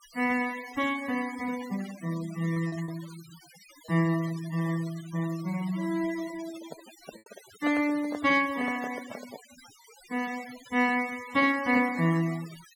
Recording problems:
denoising artefacts; signal-to-artefact ratio 17 dB
packet loss; 1% of the sound replaced, filled with repeated pitch periods
microphone handling noise; from 6.5 to 9.5 s; peak -5 dB vs average level

